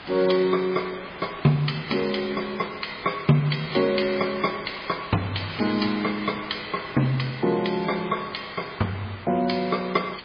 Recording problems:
lossy codec; MP3, log-spectral distance 8 dB
background hiss; SNR 15 dB

